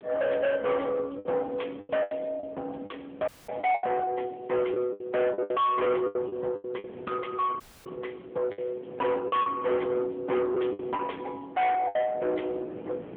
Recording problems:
telephone audio; 260 Hz to 2 kHz, AMR-NB
distorted audio; soft clipping, signal-to-distortion ratio 7 dB
wind on the microphone; below 810 Hz, SNR 17 dB
lost packets; 9% of the sound replaced, filled with the last packet
audio cutting out; at 3.5 s and at 7.5 s

